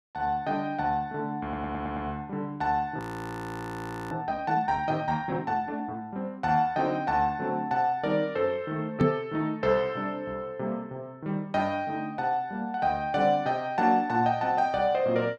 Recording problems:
audio stuttering; at 1.5 s
audio freezing; at 3 s for 1 s
microphone bump; at 9 s; peak +8 dB vs average level

